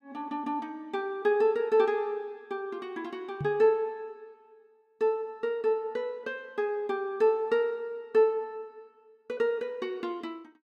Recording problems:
microphone bump; at 3.5 s; peak -3 dB vs average level

